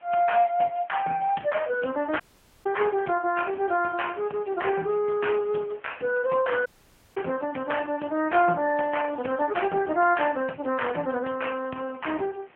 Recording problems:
phone line; 260 Hz to 3.1 kHz, AMR-NB
background hiss; SNR 29 dB
dropout; at 2 s and at 6.5 s for 0.5 s

